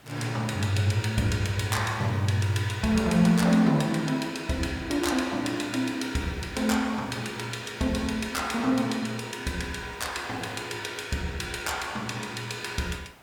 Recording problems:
hiss; SNR 23 dB

